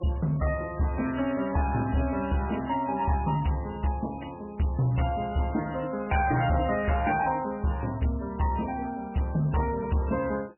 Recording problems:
lossy compression; MP3, log-spectral distance 4 dB, nothing above 2.4 kHz
distorted audio; soft clipping, signal-to-distortion ratio 12 dB

